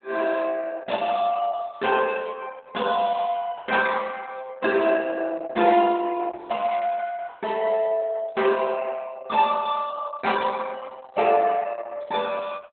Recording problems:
lossy codec; Opus, log-spectral distance 4 dB, nothing above 3.7 kHz

